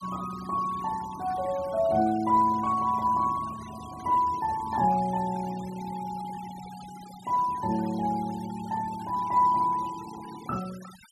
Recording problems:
noise reduction artefacts; signal-to-artefact ratio 20 dB

